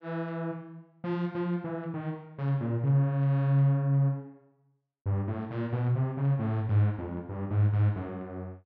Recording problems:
none

